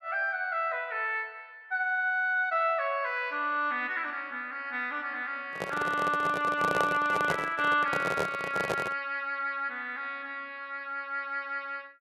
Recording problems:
handling noise; from 5.5 to 9 s; peak +3 dB vs average level

